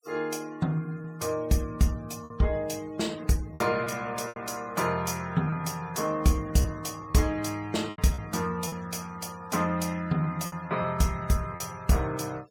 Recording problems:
denoising artefacts; signal-to-artefact ratio 23 dB
lost packets; 5% of the sound replaced, filled with repeated pitch periods

